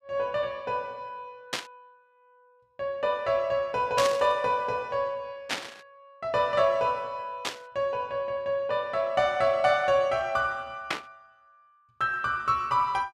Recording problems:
burst of static; 5 times, first at 1.5 s; peak +2 dB vs average level

